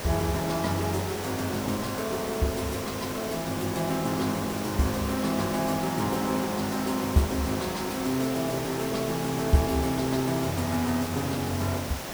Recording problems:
background hiss; slope -4 dB per octave, SNR 6 dB

